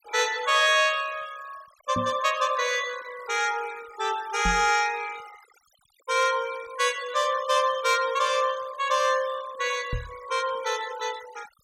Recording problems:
denoising artefacts; signal-to-artefact ratio 18 dB
knock on the microphone; at 2 s, at 4.5 s and at 10 s; peak -2 dB vs average level

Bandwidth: 16.5 kHz